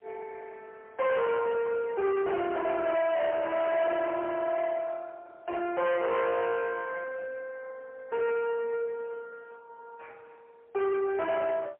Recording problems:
telephone audio; 990 Hz to 2.1 kHz, AMR-NB, then MP3
distortion; soft clipping, signal-to-distortion ratio 6 dB

